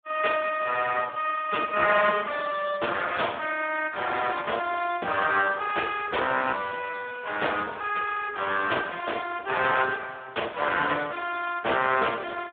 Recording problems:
phone line; 300 Hz to 3.5 kHz, Speex

